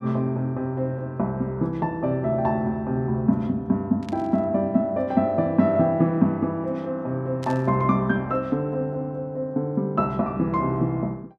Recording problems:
burst of static; at 4 s and at 7.5 s; peak -13 dB vs average level

